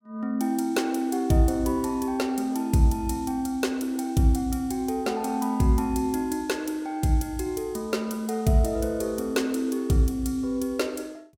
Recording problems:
none

